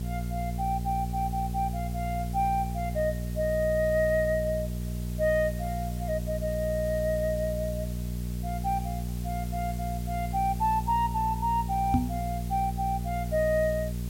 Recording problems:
electrical hum; 60 Hz, harmonics up to 420 Hz, SNR 4 dB
background hiss; slope +1 dB per octave, SNR 17 dB
microphone bump; at 12 s; peak +8 dB vs average level

